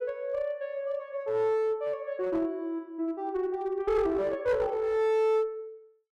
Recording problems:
distorted audio; hard clipping, uneven, signal-to-distortion ratio 11 dB

